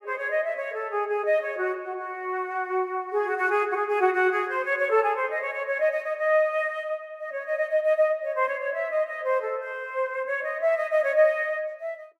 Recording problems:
none

